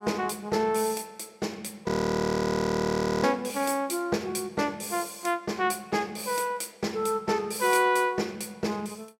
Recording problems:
audio freezing; at 2 s for 1.5 s

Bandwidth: 16 kHz